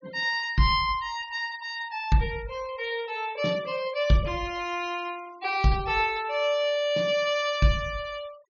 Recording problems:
treble cut off; nothing above 6.7 kHz
noise reduction artefacts; signal-to-artefact ratio 22 dB

